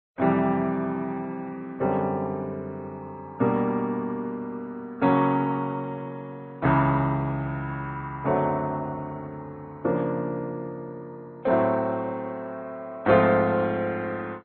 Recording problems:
lossy codec; Vorbis, then MP2, log-spectral distance 2 dB, nothing above 3.7 kHz

